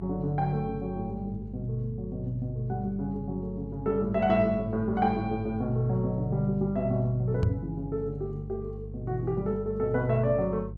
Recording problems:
hum; 50 Hz, harmonics up to 350 Hz, SNR 11 dB
knock on the microphone; at 7.5 s; peak +8 dB vs average level

